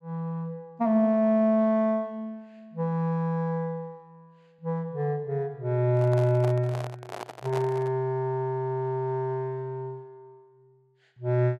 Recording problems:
handling noise; from 6 to 8 s; peak -4 dB vs average level

